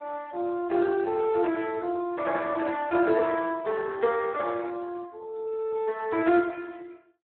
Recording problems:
phone line; 280 Hz to 3.9 kHz, Speex

